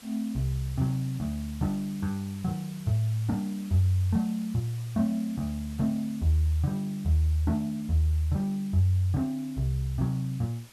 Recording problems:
hiss; slope -1 dB per octave, SNR 22 dB

